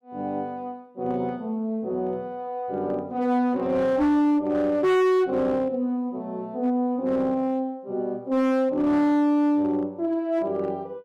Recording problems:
distortion; hard clipping, signal-to-distortion ratio 8 dB

